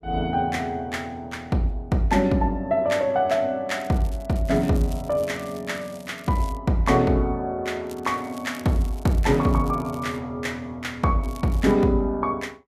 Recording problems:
lossy compression; Vorbis, log-spectral distance 2 dB, nothing above 13.8 kHz
crackling; from 4 to 6.5 s, from 8 to 10 s and at 11 s; loose cable, SNR 24 dB

